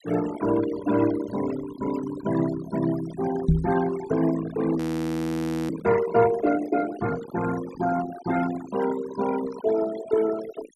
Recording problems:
denoising artefacts; signal-to-artefact ratio 12 dB
knock on the microphone; at 3.5 s; peak +9 dB vs average level
audio freezing; at 5 s for 1 s

